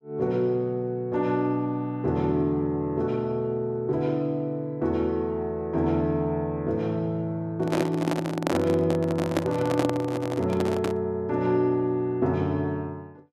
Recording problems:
handling noise; from 7.5 to 11 s; peak +4 dB vs average level

